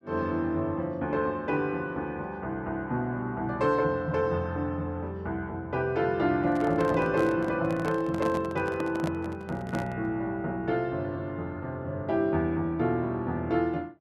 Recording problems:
handling noise; from 6.5 to 10 s; peak -2 dB vs average level

